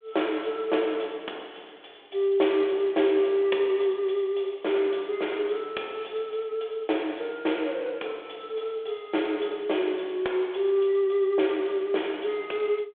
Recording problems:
phone line; 280 Hz to 3.5 kHz, G.726

